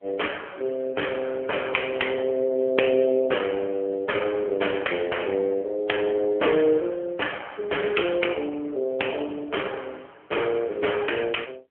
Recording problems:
telephone audio; 300 Hz to 3.3 kHz, AMR-NB

